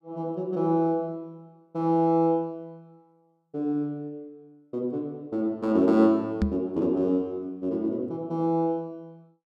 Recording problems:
microphone thump; at 6.5 s; peak +5 dB vs average level

